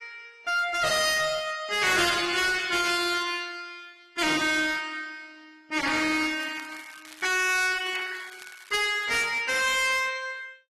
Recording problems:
codec artefacts; AAC, then AAC, log-spectral distance 4 dB, nothing above 12.7 kHz
distorted audio; hard clipping, uneven, signal-to-distortion ratio 7 dB
crackle; from 6 to 9 s; loose cable, SNR 22 dB

